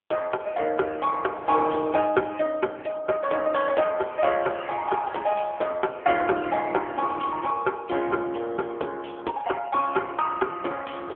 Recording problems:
telephone audio; 320 Hz to 3.4 kHz, AMR-NB

